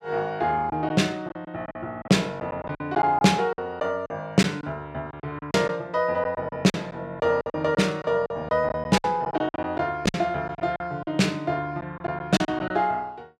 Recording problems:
lost packets; 11% of the sound replaced, filled with silence

